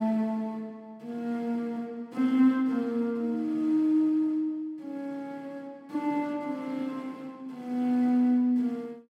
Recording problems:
none

